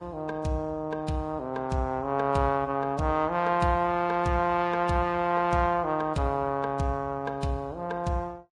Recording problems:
lossy codec; Vorbis, log-spectral distance 2 dB, nothing above 10.4 kHz

